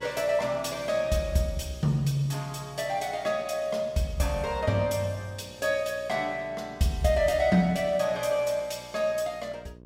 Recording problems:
electrical hum; 60 Hz, harmonics up to 1 kHz, SNR 24 dB

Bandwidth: 16 kHz